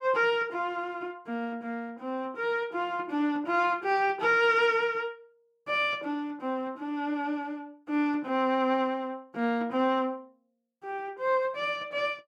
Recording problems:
none

